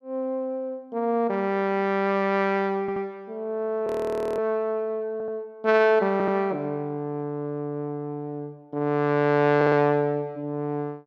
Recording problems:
stutter; 4 times, first at 3 s
audio freezing; at 4 s for 0.5 s

